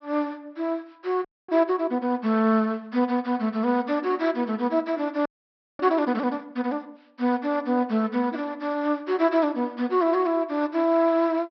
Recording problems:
treble missing; nothing above 5.5 kHz
frozen audio; at 1.5 s and at 5.5 s for 0.5 s

